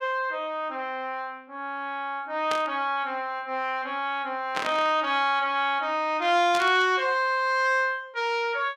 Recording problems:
burst of static; at 2.5 s, at 4.5 s and at 6.5 s; peak -1 dB vs average level

